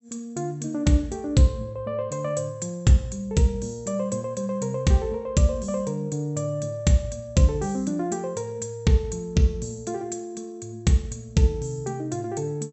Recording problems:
treble missing; nothing above 7.9 kHz

